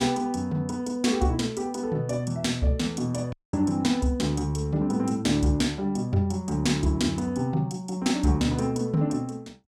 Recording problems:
audio cutting out; at 3.5 s

